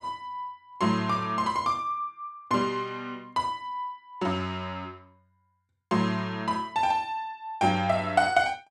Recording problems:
none

